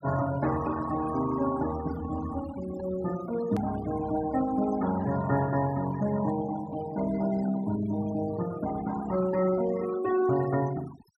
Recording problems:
denoising artefacts; signal-to-artefact ratio 13 dB
edit click; at 3.5 s

